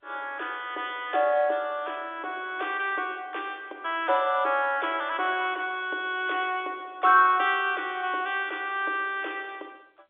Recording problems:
telephone audio; 280 Hz to 3.6 kHz, G.711

